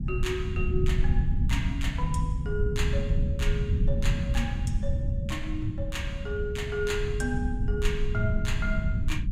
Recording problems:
low-frequency rumble; below 110 Hz, SNR -3 dB

